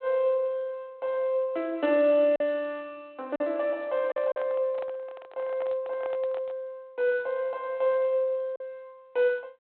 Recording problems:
phone line; 300 Hz to 3.6 kHz, G.726
lost packets; 2% of the sound replaced, filled with silence
handling noise; from 4 to 6.5 s; peak -9 dB vs average level

